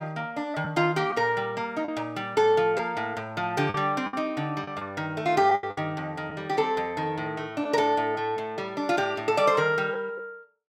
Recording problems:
lost packets; 4% of the sound replaced, filled with the last packet

